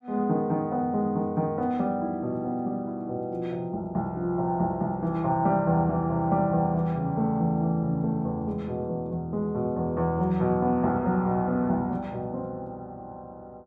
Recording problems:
none

